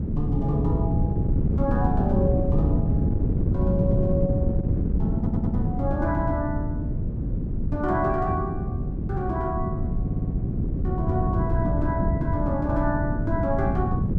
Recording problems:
wind on the microphone; below 190 Hz, SNR -3 dB
audio stuttering; at 5 s and at 10 s

